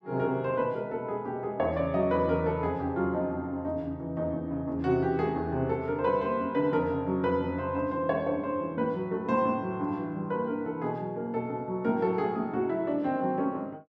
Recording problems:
none

